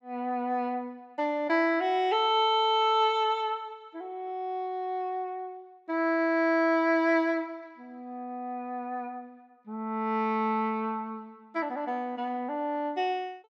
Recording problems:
none

